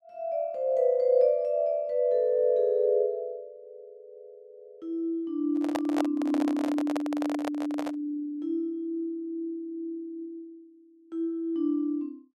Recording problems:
microphone handling noise; from 5.5 to 8 s; peak +1 dB vs average level

